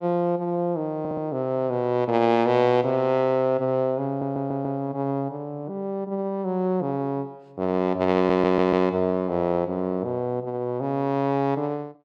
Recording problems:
stutter; at 1 s, at 4 s and at 8 s

